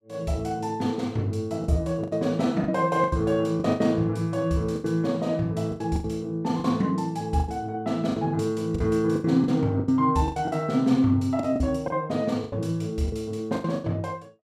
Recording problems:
lost packets; 11% of the sound replaced, filled with the last packet

